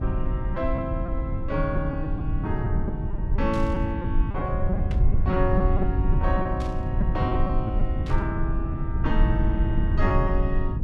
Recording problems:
low-frequency rumble; below 100 Hz, SNR -3 dB
packet loss; 6% of the sound replaced, filled with repeated pitch periods
static burst; 4 times, first at 3.5 s; peak -7 dB vs average level

